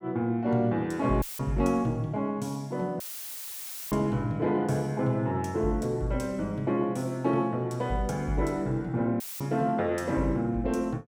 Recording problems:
audio cutting out; at 1 s, at 3 s for 1 s and at 9 s; filled with static

